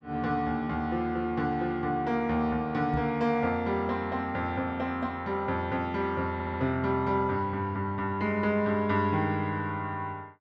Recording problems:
microphone thump; at 3 s; peak -3 dB vs average level
stutter; at 6.5 s

